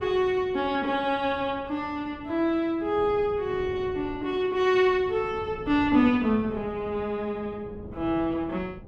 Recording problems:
wind noise; below 330 Hz, SNR 18 dB

